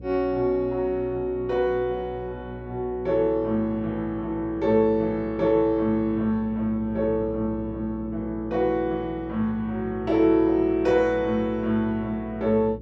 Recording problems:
electrical hum; 60 Hz, harmonics up to 540 Hz, SNR 16 dB

